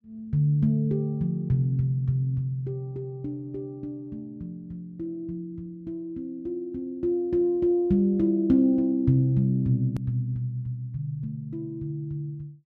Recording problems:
hard cut with a click; at 10 s

